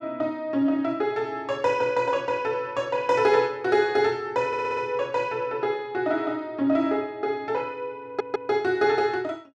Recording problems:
stutter; at 4.5 s and at 8 s

